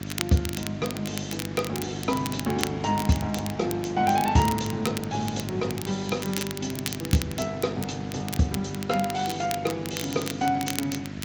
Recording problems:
lossy codec; Speex, log-spectral distance 5 dB
hum; 50 Hz, harmonics up to 750 Hz, SNR 8 dB
hiss; SNR 18 dB
crackling; vinyl, SNR 9 dB

